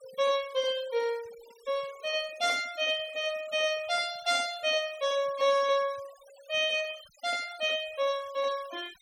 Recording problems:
noise reduction artefacts; signal-to-artefact ratio 20 dB

